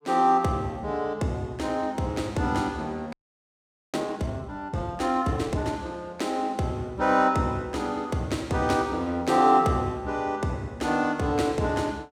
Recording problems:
frozen audio; at 3 s for 1 s

